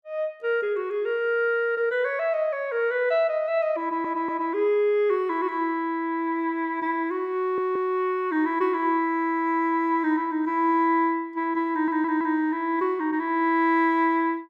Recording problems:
audio stuttering; at 4 s, at 7.5 s and at 12 s

